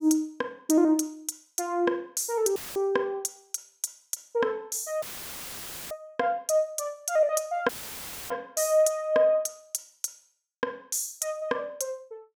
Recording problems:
dropout; at 2.5 s, at 5 s for 1 s and at 7.5 s for 0.5 s; filled with static

